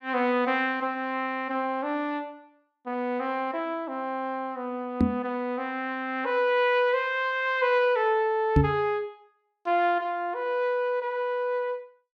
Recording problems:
microphone thump; at 5 s and at 8.5 s; peak +9 dB vs average level

